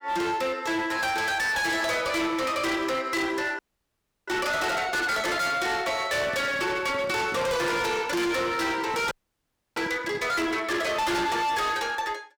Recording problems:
distorted audio; hard clipping, signal-to-distortion ratio 6 dB
audio freezing; at 3.5 s for 0.5 s and at 9 s for 0.5 s
handling noise; from 6 to 10 s; peak -7 dB vs average level

